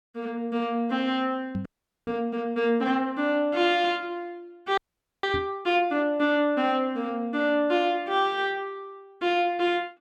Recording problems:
microphone bump; at 1.5 s and at 5.5 s; peak -2 dB vs average level
audio freezing; at 1.5 s and at 5 s

